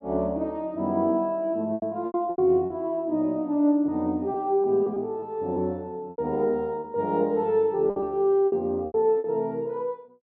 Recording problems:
lost packets; 8% of the sound replaced, filled with repeated pitch periods

